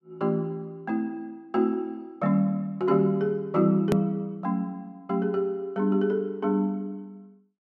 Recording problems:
click at an edit; at 4 s

